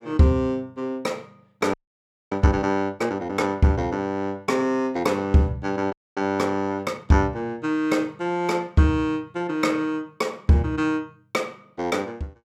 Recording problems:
frozen audio; at 1.5 s for 0.5 s and at 6 s

